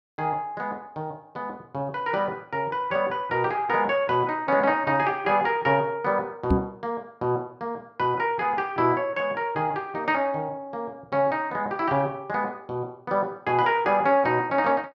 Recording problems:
knock on the microphone; at 6.5 s; peak +7 dB vs average level

